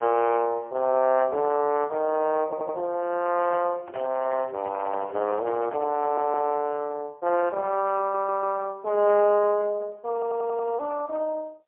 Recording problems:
telephone audio; 320 Hz to 2.5 kHz, AMR-NB, then MP3
stutter; 4 times, first at 2.5 s
microphone handling noise; from 3 to 6.5 s; peak -10 dB vs average level

